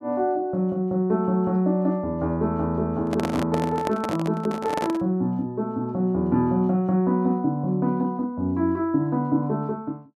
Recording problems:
microphone handling noise; from 3 to 5 s; peak 0 dB vs average level

